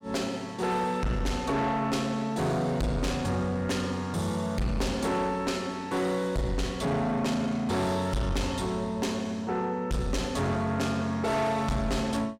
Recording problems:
distorted audio; soft clipping, signal-to-distortion ratio 8 dB

